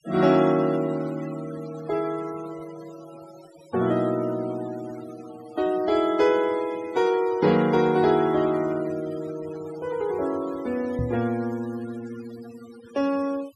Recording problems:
denoising artefacts; signal-to-artefact ratio 20 dB
microphone thump; at 11 s; peak -1 dB vs average level

